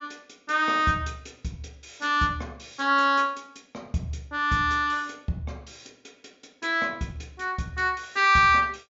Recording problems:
treble missing; nothing above 7.3 kHz

